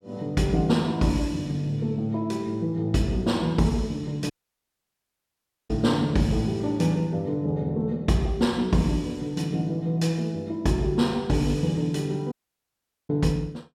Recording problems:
audio cutting out; at 4.5 s for 1.5 s and at 12 s for 1 s

